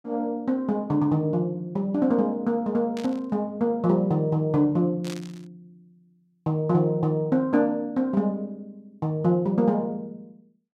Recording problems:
static burst; at 3 s and at 5 s; peak -11 dB vs average level

